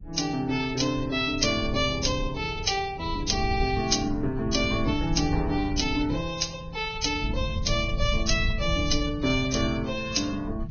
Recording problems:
lossy compression; Vorbis, log-spectral distance 5 dB, nothing above 6.5 kHz
low-frequency rumble; below 100 Hz, SNR 8 dB

